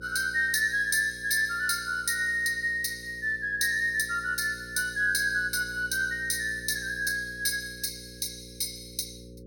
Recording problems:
hum; 60 Hz, harmonics up to 540 Hz, SNR 20 dB

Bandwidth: 17 kHz